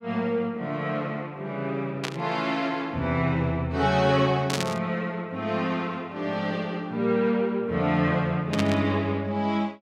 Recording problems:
static burst; at 2 s, at 4.5 s and at 8.5 s; peak +2 dB vs average level

